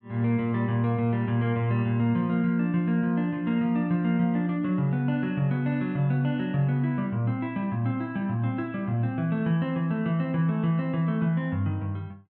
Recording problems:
none

